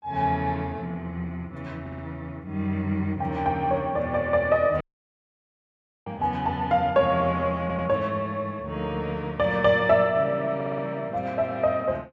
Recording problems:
audio stuttering; at 2 s, at 7.5 s and at 11 s
dropout; at 5 s for 1.5 s

